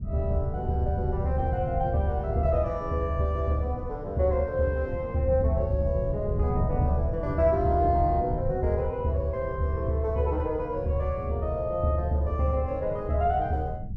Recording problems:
wind on the microphone; below 140 Hz, SNR 8 dB

